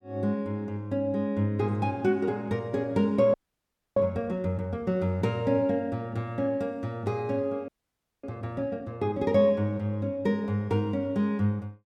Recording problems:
audio freezing; at 3.5 s for 0.5 s and at 7.5 s for 0.5 s

